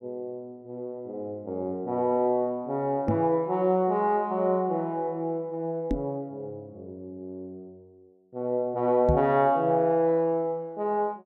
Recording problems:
microphone bump; at 3 s, at 6 s and at 9 s; peak +4 dB vs average level

